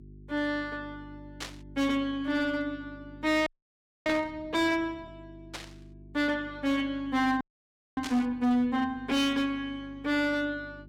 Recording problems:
distortion; hard clipping, uneven, signal-to-distortion ratio 10 dB
electrical hum; 50 Hz, harmonics up to 400 Hz, SNR 21 dB
static burst; 4 times, first at 1.5 s; peak -3 dB vs average level
frozen audio; at 3.5 s for 0.5 s and at 7.5 s for 0.5 s

